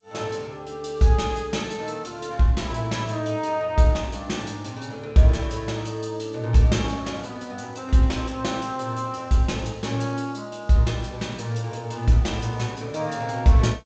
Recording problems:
lossy codec; G.722, log-spectral distance 3 dB, nothing above 7.3 kHz

